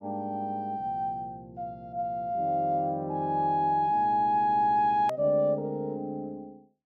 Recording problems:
hard cut with a click; at 5 s

